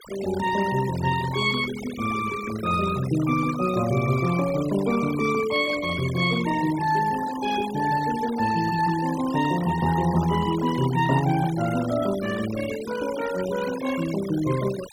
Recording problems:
denoising artefacts; signal-to-artefact ratio 13 dB

